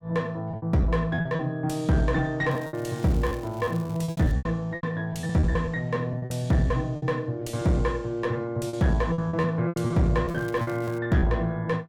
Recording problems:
distorted audio; soft clipping, signal-to-distortion ratio 11 dB
lost packets; 13% of the sound replaced, filled with repeated pitch periods
crackle; from 2.5 to 4.5 s and at 10 s; loose cable, SNR 24 dB

